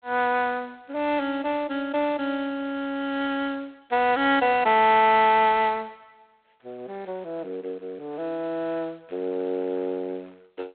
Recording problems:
telephone audio; 300 Hz to 3.8 kHz, G.726

